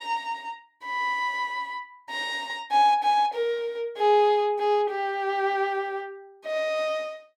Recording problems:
none

